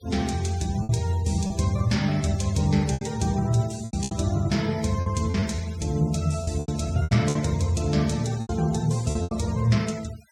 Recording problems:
noise reduction artefacts; signal-to-artefact ratio 20 dB
packet loss; 9% of the sound replaced, filled with repeated pitch periods

